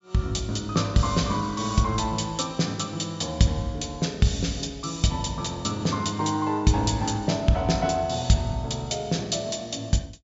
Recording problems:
low-pass filter; nothing above 8 kHz

